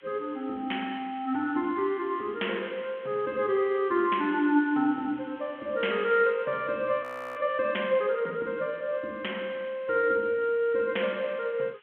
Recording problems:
telephone audio; 240 Hz to 3.3 kHz, G.726
hiss; SNR 27 dB
audio freezing; at 7 s

